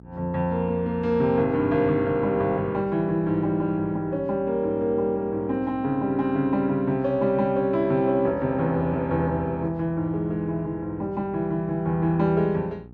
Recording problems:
hum; 60 Hz, harmonics up to 900 Hz, SNR 22 dB

